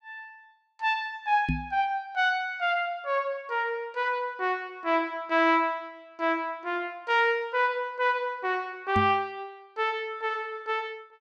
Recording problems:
microphone thump; at 1.5 s and at 9 s; peak +3 dB vs average level

